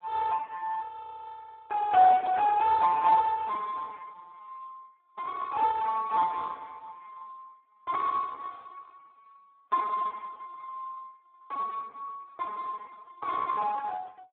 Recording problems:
telephone audio; 280 Hz to 2.1 kHz, Speex

